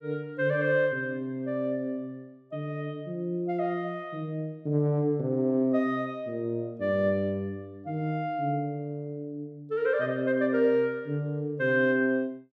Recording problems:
none

